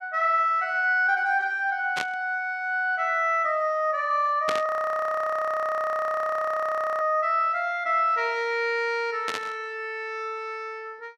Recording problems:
burst of static; at 2 s, at 4.5 s and at 9.5 s; peak 0 dB vs average level
frozen audio; at 4.5 s for 2.5 s

